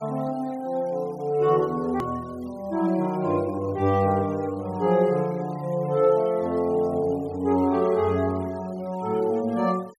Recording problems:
denoising artefacts; signal-to-artefact ratio 25 dB
click at an edit; at 2 s

